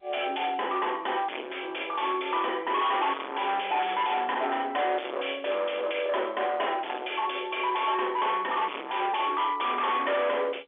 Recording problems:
phone line; 300 Hz to 3.5 kHz, G.711
distortion; hard clipping, signal-to-distortion ratio 5 dB

